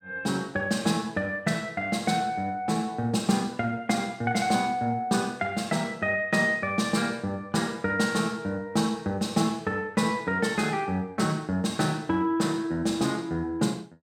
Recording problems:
none

